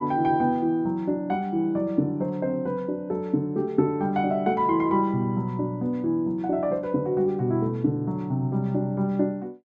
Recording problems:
none

